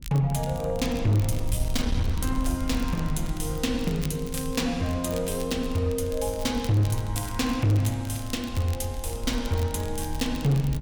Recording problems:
distortion; hard clipping, signal-to-distortion ratio 11 dB
wind noise; below 68 Hz, SNR 9 dB
crackle; vinyl, SNR 17 dB

